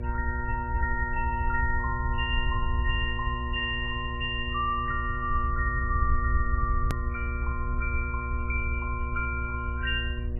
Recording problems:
codec artefacts; MP3, log-spectral distance 3 dB, nothing above 2.4 kHz
electrical hum; 60 Hz, harmonics up to 1.1 kHz, SNR 9 dB
background hiss; SNR 27 dB
low-frequency rumble; below 66 Hz, SNR 1 dB
edit click; at 7 s

